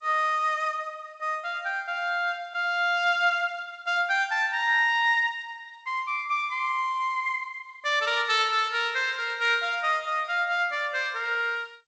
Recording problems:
lossy compression; G.722, log-spectral distance 2 dB, nothing above 7.6 kHz

